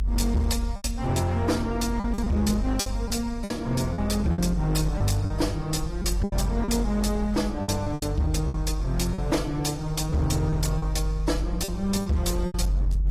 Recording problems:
lossy compression; AAC, log-spectral distance 2 dB
distorted audio; hard clipping, signal-to-distortion ratio 12 dB
rumble; below 54 Hz, strongest tone 48 Hz, SNR 5 dB
packet loss; 9% of the sound replaced, filled with repeated pitch periods

